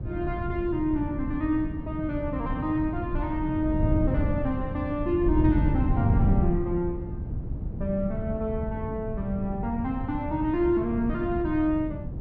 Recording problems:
wind noise; below 150 Hz, SNR 2 dB

